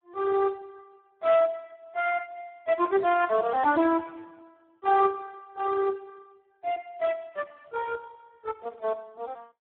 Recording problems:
telephone audio; 300 Hz to 2.3 kHz, Speex

